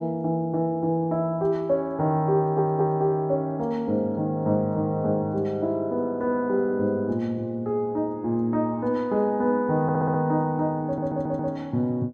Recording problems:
stutter; at 2.5 s, at 10 s and at 11 s

